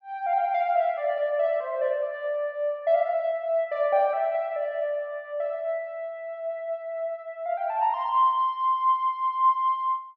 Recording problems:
none

